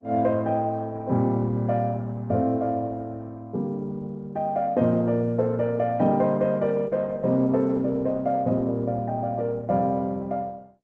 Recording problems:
lossy codec; Opus, log-spectral distance 2 dB

